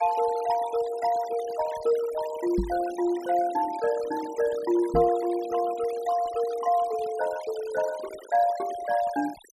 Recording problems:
denoising artefacts; signal-to-artefact ratio 16 dB
microphone thump; at 2.5 s and at 5 s; peak +1 dB vs average level

